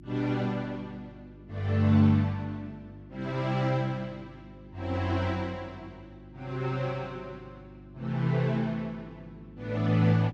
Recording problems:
hum; 50 Hz, harmonics up to 350 Hz, SNR 20 dB

